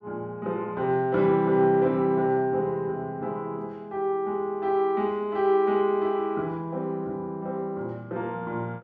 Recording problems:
none

